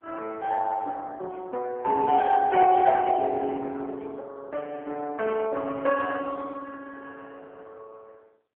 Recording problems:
telephone audio; 300 Hz to 3 kHz, AMR-NB

